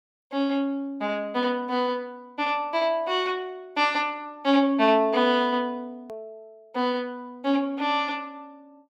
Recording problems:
click at an edit; at 6 s

